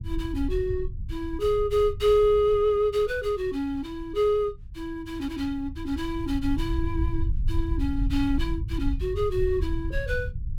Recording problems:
low-frequency rumble; below 80 Hz, SNR 6 dB

